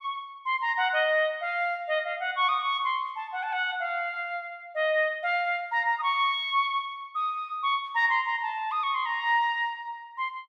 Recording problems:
none

